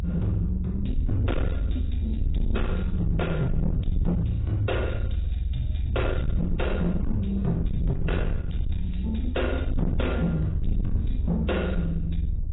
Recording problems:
lossy compression; AAC, log-spectral distance 2 dB, nothing above 3.8 kHz
distorted audio; soft clipping, signal-to-distortion ratio 8 dB
rumble; below 80 Hz, SNR 0 dB

